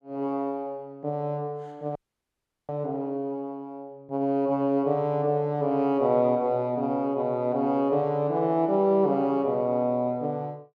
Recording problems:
audio freezing; at 2 s for 0.5 s

